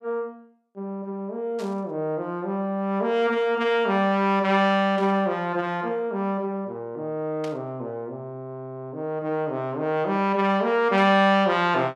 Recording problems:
static burst; 4 times, first at 1.5 s; peak -12 dB vs average level

